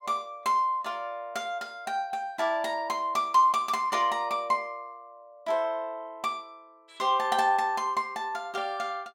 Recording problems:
none

